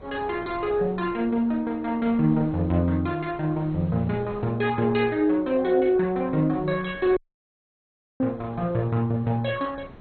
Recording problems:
lossy codec; MP2, then MP2, log-spectral distance 2 dB, nothing above 3.9 kHz
wind on the microphone; below 540 Hz, SNR 21 dB
dropout; at 7 s for 1 s

